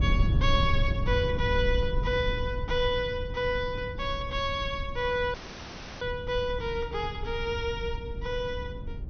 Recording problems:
treble missing; nothing above 6.2 kHz
low-frequency rumble; below 100 Hz, SNR 3 dB
dropout; at 5.5 s for 0.5 s

